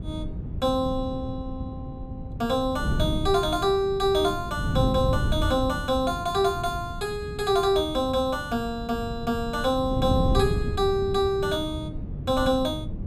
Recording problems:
wind on the microphone; below 170 Hz, SNR 6 dB

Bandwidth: 15.5 kHz